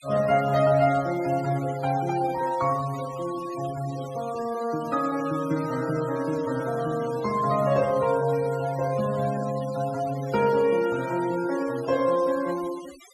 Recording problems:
denoising artefacts; signal-to-artefact ratio 17 dB

